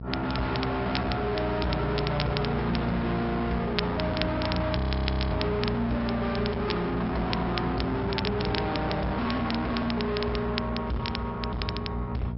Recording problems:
treble missing; nothing above 5.3 kHz
codec artefacts; MP3, log-spectral distance 2 dB
distorted audio; soft clipping, signal-to-distortion ratio 5 dB
electrical hum; 60 Hz, harmonics up to 720 Hz, SNR 6 dB
crackle; vinyl, SNR 8 dB
frozen audio; at 5 s for 0.5 s

